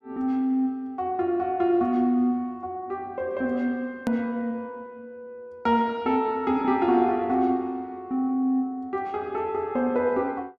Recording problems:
edit click; at 4 s

